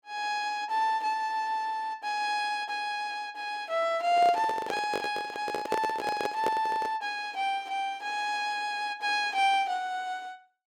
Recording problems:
handling noise; from 4 to 7 s; peak +3 dB vs average level

